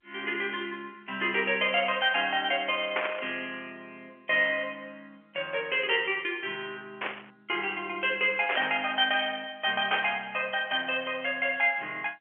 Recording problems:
phone line; 300 Hz to 3.2 kHz, G.711
burst of static; 4 times, first at 3 s; peak +3 dB vs average level

